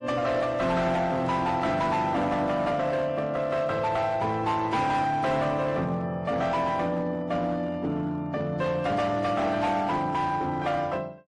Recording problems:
lossy compression; MP3, then AAC, log-spectral distance 2 dB
distorted audio; hard clipping, uneven, signal-to-distortion ratio 11 dB

